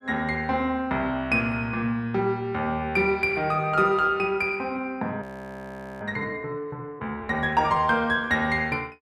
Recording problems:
audio freezing; at 5 s for 1 s

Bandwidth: 13.5 kHz